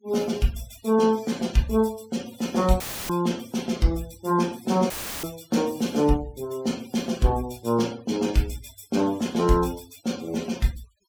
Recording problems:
noise reduction artefacts; signal-to-artefact ratio 20 dB
dropout; at 3 s and at 5 s; filled with static

